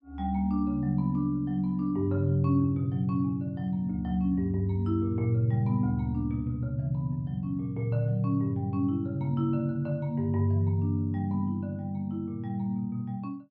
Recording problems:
none

